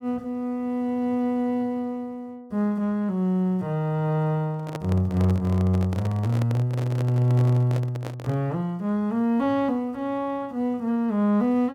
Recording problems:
microphone handling noise; from 4.5 to 8.5 s; peak -5 dB vs average level

